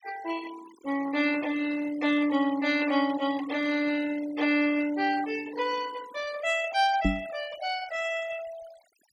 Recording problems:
noise reduction artefacts; signal-to-artefact ratio 16 dB
microphone bump; at 7 s; peak +5 dB vs average level

